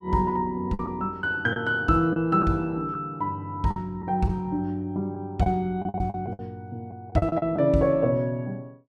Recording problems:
packet loss; 7% of the sound replaced, filled with the last packet

